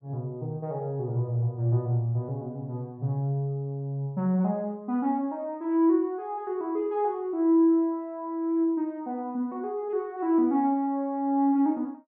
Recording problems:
none

